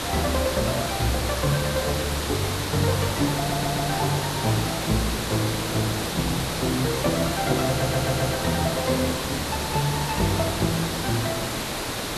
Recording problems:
hiss; slope -3 dB per octave, SNR 1 dB
stutter; at 3.5 s and at 7.5 s

